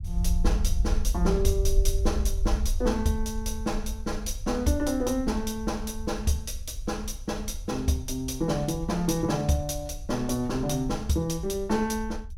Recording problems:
rumble; below 58 Hz, SNR 5 dB

